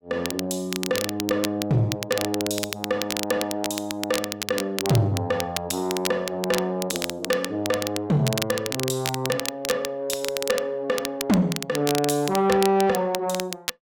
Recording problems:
distortion; soft clipping, signal-to-distortion ratio 12 dB
crackling; vinyl, SNR 6 dB

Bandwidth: 17 kHz